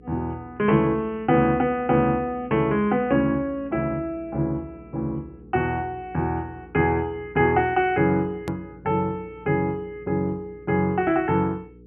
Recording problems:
low-pass filter; nothing above 3.1 kHz
hum; 60 Hz, harmonics up to 480 Hz, SNR 23 dB
hard cut with a click; at 8.5 s

